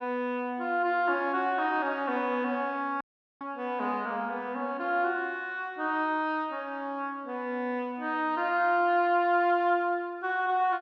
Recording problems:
audio cutting out; at 3 s

